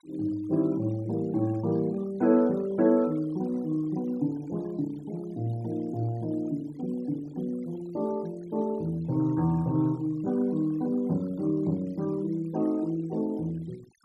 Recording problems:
denoising artefacts; signal-to-artefact ratio 25 dB

